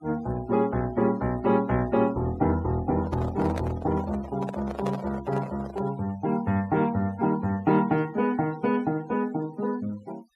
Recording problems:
noise reduction artefacts; signal-to-artefact ratio 21 dB
handling noise; from 3 to 6 s; peak -3 dB vs average level

